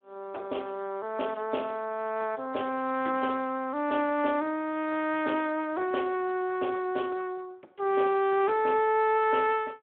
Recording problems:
phone line; 280 Hz to 3 kHz, Speex

